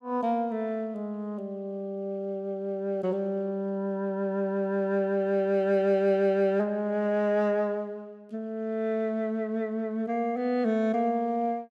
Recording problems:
none

